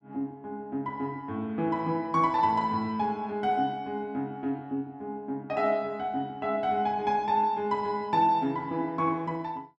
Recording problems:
none

